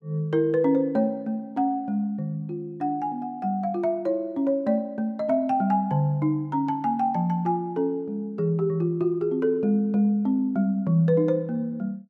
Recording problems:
none

